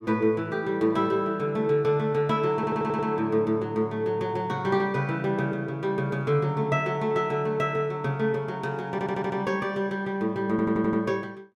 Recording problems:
stutter; at 2.5 s, at 9 s and at 11 s

